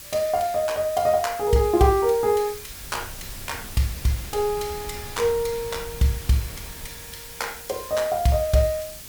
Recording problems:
background hiss; slope +3 dB per octave, SNR 14 dB
wind noise; below 300 Hz, SNR 19 dB

